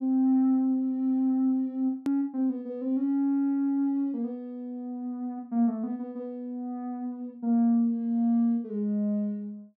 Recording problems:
edit click; at 2 s

